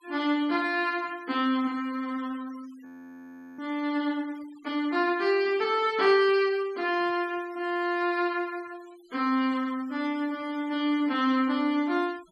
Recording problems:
noise reduction artefacts; signal-to-artefact ratio 24 dB
frozen audio; at 3 s for 0.5 s

